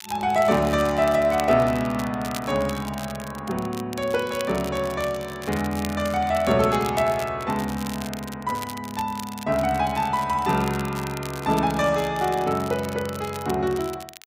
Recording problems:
crackle; vinyl, SNR 15 dB

